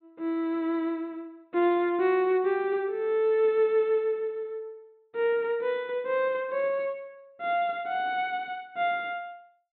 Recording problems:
low-pass filter; nothing above 4 kHz

